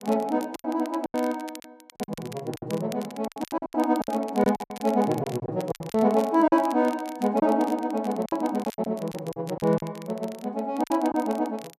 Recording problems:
crackling; vinyl, SNR 20 dB
lost packets; 13% of the sound replaced, filled with silence

